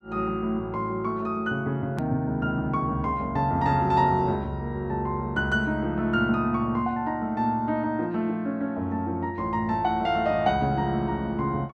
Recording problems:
click at an edit; at 2 s

